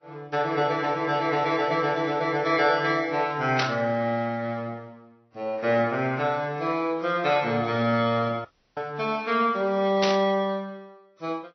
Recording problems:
low-pass filter; nothing above 5.7 kHz
lossy codec; MP3, then Vorbis, log-spectral distance 2 dB
burst of static; at 3.5 s and at 10 s; peak +2 dB vs average level
dropout; at 8.5 s

